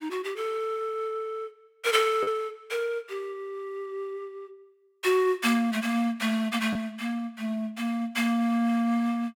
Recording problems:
lost packets; 0.7% of the sound replaced, filled with the last packet

